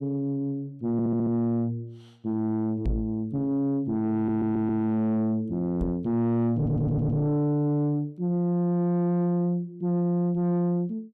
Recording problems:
distorted audio; soft clipping, signal-to-distortion ratio 6 dB
audio stuttering; at 1 s, at 4 s and at 6.5 s
knock on the microphone; at 3 s and at 6 s; peak +2 dB vs average level

